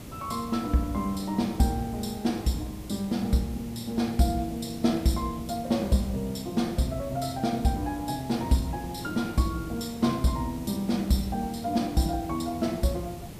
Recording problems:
hiss; SNR 13 dB

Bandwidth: 15 kHz